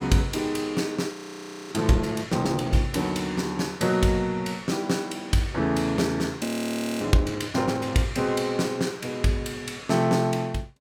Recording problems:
frozen audio; at 1 s for 0.5 s and at 6.5 s for 0.5 s

